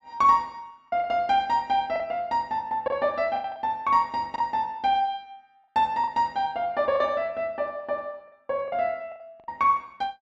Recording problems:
lost packets; 7% of the sound replaced, filled with the last packet

